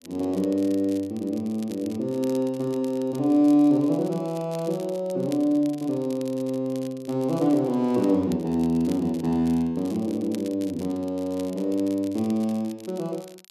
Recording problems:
crackle; vinyl, SNR 23 dB

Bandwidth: 13 kHz